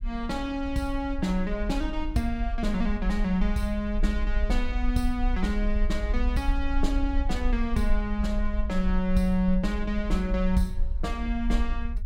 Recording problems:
rumble; below 48 Hz, SNR 3 dB

